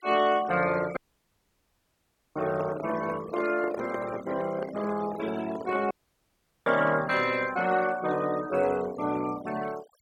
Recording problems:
noise reduction artefacts; signal-to-artefact ratio 16 dB
dropout; at 1 s for 1.5 s and at 6 s for 1 s
handling noise; from 2.5 to 6 s; peak -4 dB vs average level

